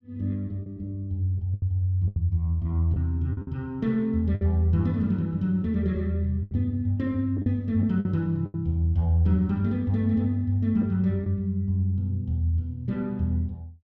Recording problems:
packet loss; 5% of the sound replaced, filled with the last packet

